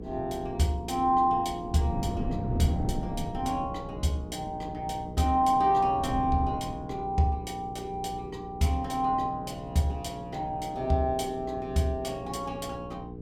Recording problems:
hum; 60 Hz, harmonics up to 480 Hz, SNR 13 dB
wind on the microphone; below 240 Hz, SNR 11 dB

